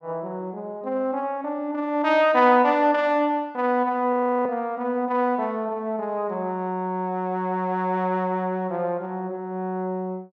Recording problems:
frozen audio; at 4 s

